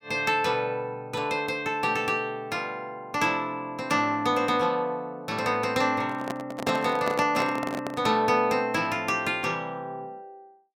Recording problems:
microphone handling noise; from 6 to 8 s; peak 0 dB vs average level

